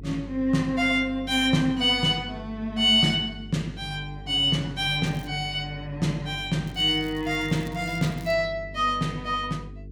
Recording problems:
hum; 50 Hz, harmonics up to 450 Hz, SNR 17 dB
crackle; at 5 s and from 6.5 to 8.5 s; loose cable, SNR 26 dB

